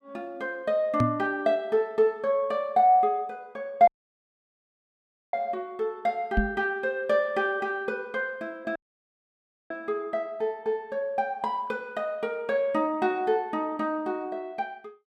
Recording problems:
microphone bump; at 1 s and at 6.5 s; peak +6 dB vs average level
audio cutting out; at 4 s for 1.5 s and at 9 s for 1 s

